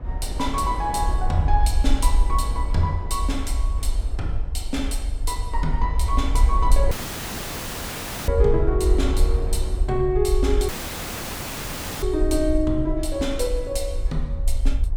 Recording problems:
low-frequency rumble; below 58 Hz, SNR 0 dB
wind on the microphone; below 580 Hz, SNR 13 dB
dropout; at 7 s for 1.5 s and at 11 s for 1.5 s

